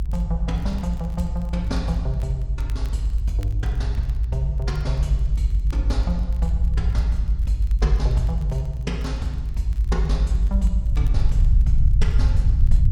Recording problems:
hum; 50 Hz, harmonics up to 400 Hz, SNR 19 dB
low-frequency rumble; below 58 Hz, SNR -7 dB
crackling; vinyl, SNR 25 dB

